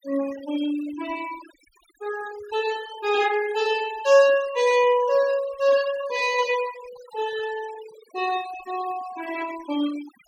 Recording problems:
noise reduction artefacts; signal-to-artefact ratio 16 dB

